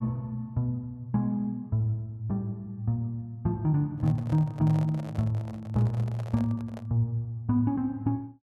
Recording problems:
microphone handling noise; from 4 to 7 s; peak -10 dB vs average level

